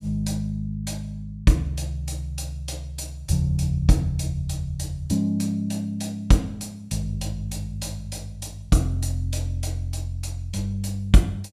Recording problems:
none

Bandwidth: 14.5 kHz